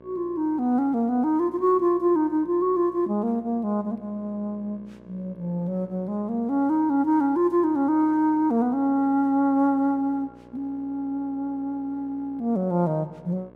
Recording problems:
electrical hum; 60 Hz, harmonics up to 1.7 kHz, SNR 25 dB

